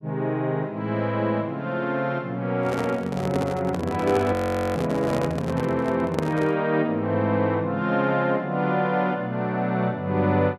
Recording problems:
handling noise; from 2.5 to 6.5 s; peak +1 dB vs average level
frozen audio; at 4.5 s

